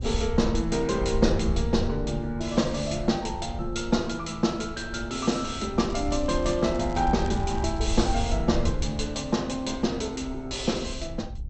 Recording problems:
lossy compression; MP2, log-spectral distance 3 dB, nothing above 8 kHz
wind on the microphone; below 78 Hz, SNR 7 dB
crackle; from 6 to 8 s; loose cable, SNR 23 dB

